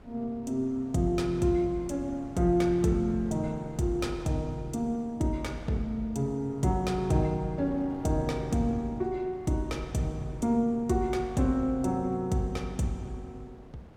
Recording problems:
wind noise; below 400 Hz, SNR 20 dB

